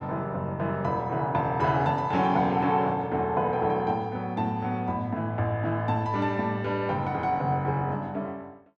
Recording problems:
none

